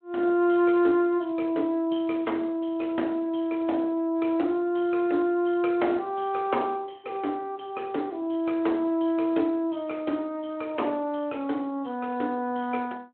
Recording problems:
phone line; 220 Hz to 3.3 kHz, Speex

